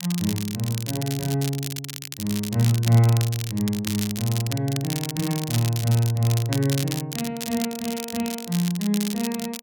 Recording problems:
crackle; vinyl, SNR 8 dB

